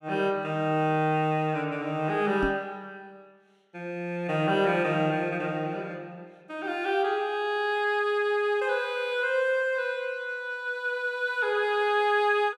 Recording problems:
knock on the microphone; at 2.5 s; peak -1 dB vs average level

